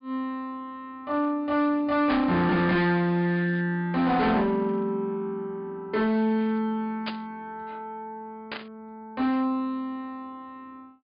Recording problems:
treble cut off; nothing above 5 kHz
distortion; hard clipping, signal-to-distortion ratio 10 dB
burst of static; at 2 s, at 7 s and at 8.5 s; peak -2 dB vs average level

